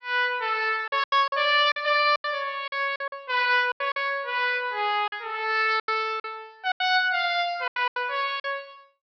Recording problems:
low-pass filter; nothing above 5.5 kHz
packet loss; 11% of the sound replaced, filled with silence

